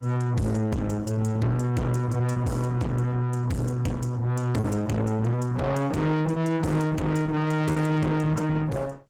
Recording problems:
lossy compression; Opus, log-spectral distance 2 dB
distorted audio; soft clipping, signal-to-distortion ratio 7 dB
lost packets; 2% of the sound replaced, filled with repeated pitch periods

